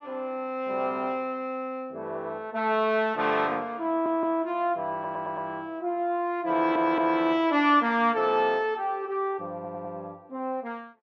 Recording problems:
audio stuttering; 4 times, first at 4 s

